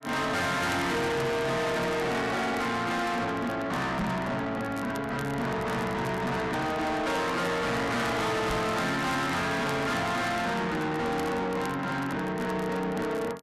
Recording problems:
distorted audio; soft clipping, signal-to-distortion ratio 6 dB
crackling; vinyl, SNR 22 dB
microphone thump; at 4 s and at 8.5 s; peak +4 dB vs average level

